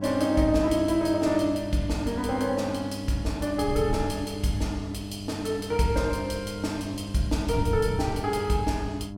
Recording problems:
hum; 50 Hz, harmonics up to 1 kHz, SNR 10 dB
wind on the microphone; below 120 Hz, SNR 11 dB

